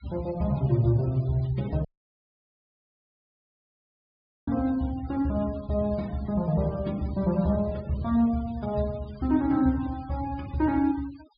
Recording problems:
treble missing; nothing above 4.9 kHz
denoising artefacts; signal-to-artefact ratio 23 dB
audio cutting out; at 2 s for 2.5 s

